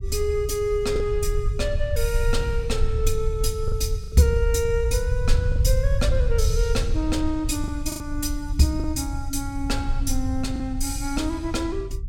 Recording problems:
rumble; below 76 Hz, SNR 1 dB
lost packets; 3% of the sound replaced, filled with the last packet

